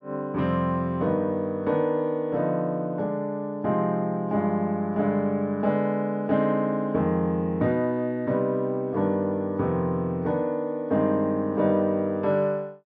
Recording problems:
treble cut off; nothing above 6.1 kHz

